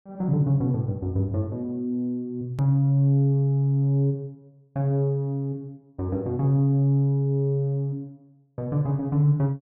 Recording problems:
edit click; at 2.5 s

